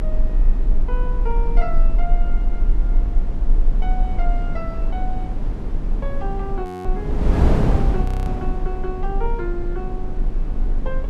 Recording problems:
hum; 50 Hz, harmonics up to 900 Hz, SNR 8 dB
low-frequency rumble; below 34 Hz, strongest tone 28 Hz, SNR -7 dB
wind on the microphone; below 160 Hz, SNR -5 dB
audio freezing; at 6.5 s and at 8 s

